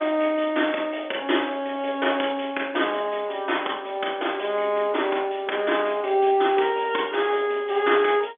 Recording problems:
telephone audio; 240 Hz to 3.5 kHz, G.711

